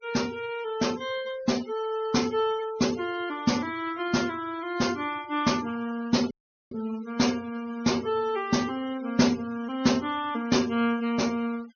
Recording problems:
low-pass filter; nothing above 6.4 kHz
noise reduction artefacts; signal-to-artefact ratio 18 dB
dropout; at 6.5 s

